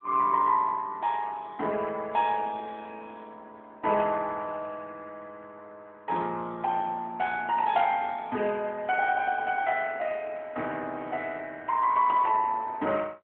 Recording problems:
telephone audio; 280 Hz to 3.4 kHz, AMR-NB

